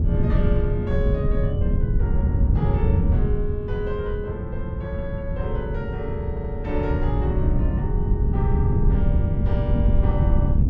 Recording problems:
wind on the microphone; below 130 Hz, SNR -7 dB
audio stuttering; at 6.5 s

